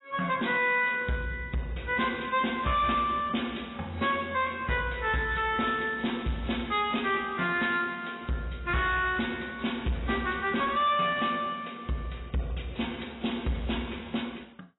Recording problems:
codec artefacts; AAC, log-spectral distance 5 dB, nothing above 3.9 kHz
distortion; soft clipping, signal-to-distortion ratio 10 dB

